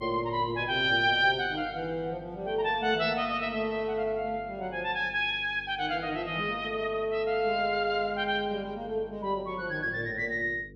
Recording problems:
electrical hum; 50 Hz, harmonics up to 500 Hz, SNR 21 dB

